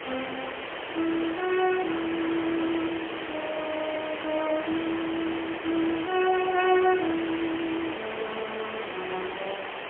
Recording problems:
telephone audio; 280 Hz to 3.3 kHz, AMR-NB, then MP3
hiss; SNR 6 dB

